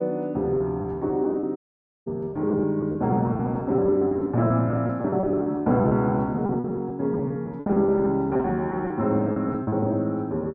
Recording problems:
packet loss; 16% of the sound replaced, filled with repeated pitch periods
dropout; at 1.5 s for 0.5 s

